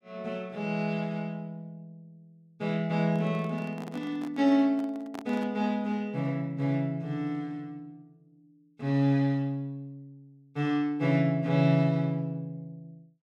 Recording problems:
handling noise; from 3 to 5.5 s; peak -8 dB vs average level

